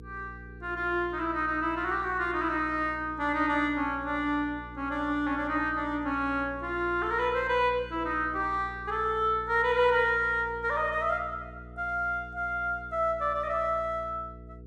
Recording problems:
electrical hum; 60 Hz, harmonics up to 480 Hz, SNR 18 dB

